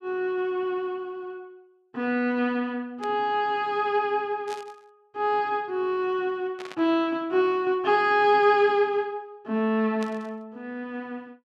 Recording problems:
static burst; 4 times, first at 3 s; peak -12 dB vs average level

